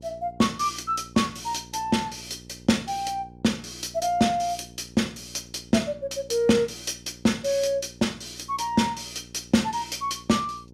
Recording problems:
mains hum; 60 Hz, harmonics up to 840 Hz, SNR 22 dB

